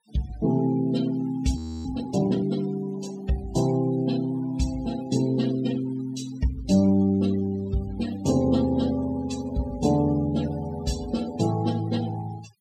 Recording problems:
denoising artefacts; signal-to-artefact ratio 17 dB
frozen audio; at 1.5 s

